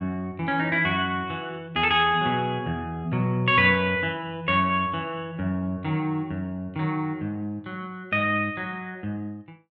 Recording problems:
none

